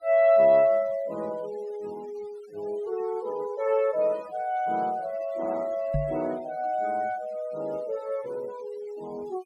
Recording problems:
noise reduction artefacts; signal-to-artefact ratio 24 dB
knock on the microphone; at 6 s; peak +2 dB vs average level

